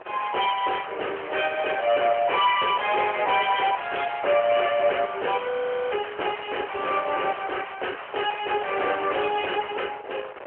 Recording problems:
phone line; 370 Hz to 3.1 kHz, AMR-NB
distorted audio; soft clipping, signal-to-distortion ratio 7 dB
wind on the microphone; below 1.8 kHz, SNR 16 dB
crackling; from 0.5 to 2.5 s and from 5 to 9.5 s; loose cable, SNR 20 dB
audio freezing; at 5.5 s

